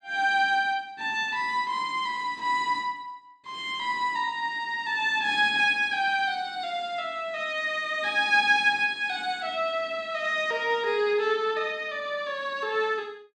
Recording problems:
none

